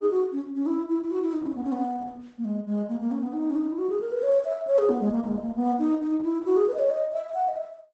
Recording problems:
lossy compression; Opus, log-spectral distance 2 dB, nothing above 8 kHz

